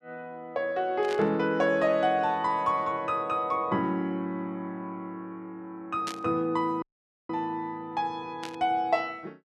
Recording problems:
static burst; at 1 s, at 6 s and at 8.5 s; peak -4 dB vs average level
audio cutting out; at 7 s

